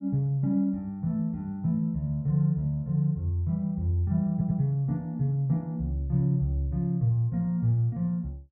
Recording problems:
stutter; at 4.5 s

